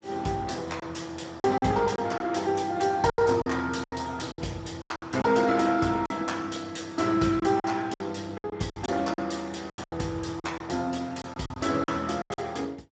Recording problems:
codec artefacts; Speex, log-spectral distance 5 dB, nothing above 7.8 kHz
packet loss; 11% of the sound replaced, filled with silence

